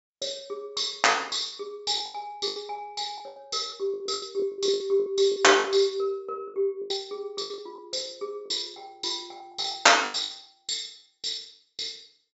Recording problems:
low-pass filter; nothing above 8 kHz
packet loss; 13% of the sound replaced, filled with the last packet

